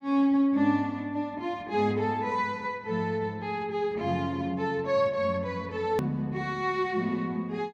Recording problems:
hard cut with a click; at 6 s

